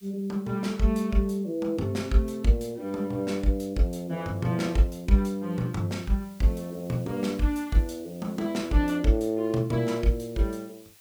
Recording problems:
hiss; slope +2 dB per octave, SNR 27 dB

